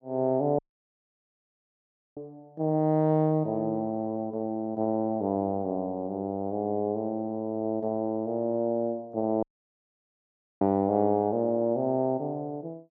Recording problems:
audio cutting out; at 0.5 s for 1.5 s and at 9.5 s for 1 s

